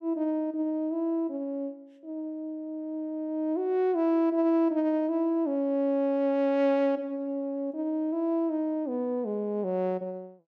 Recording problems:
none

